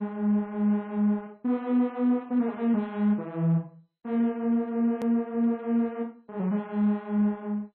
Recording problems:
lossy compression; MP2, then MP3, log-spectral distance 2 dB, nothing above 13.1 kHz
click at an edit; at 5 s

